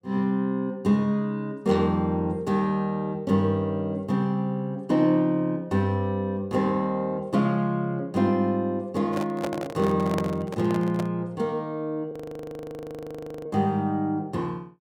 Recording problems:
handling noise; from 9 to 11 s; peak 0 dB vs average level
audio freezing; at 12 s for 1.5 s

